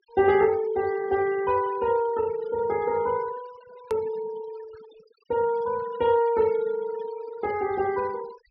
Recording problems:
low-pass filter; nothing above 5.5 kHz
denoising artefacts; signal-to-artefact ratio 20 dB
click at an edit; at 4 s

